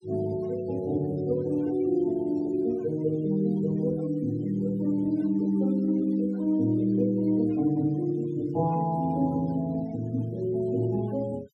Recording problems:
denoising artefacts; signal-to-artefact ratio 23 dB

